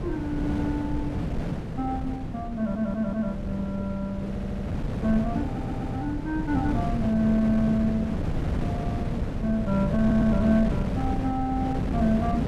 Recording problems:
wind on the microphone; below 260 Hz, SNR 3 dB
audio stuttering; 4 times, first at 2.5 s

